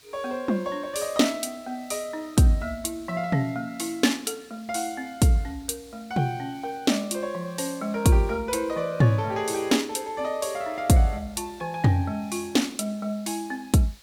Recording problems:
hiss; SNR 26 dB

